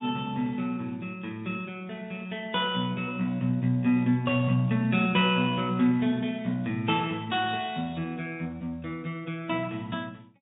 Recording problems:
low-pass filter; nothing above 3.1 kHz
lossy compression; Speex, log-spectral distance 2 dB

